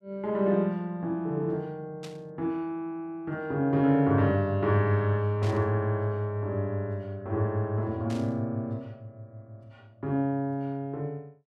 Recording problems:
burst of static; at 2 s, at 5.5 s and at 8 s; peak -12 dB vs average level

